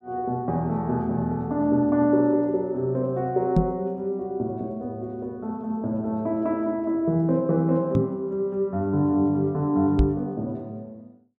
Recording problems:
microphone thump; at 3.5 s, at 8 s and at 10 s; peak +8 dB vs average level

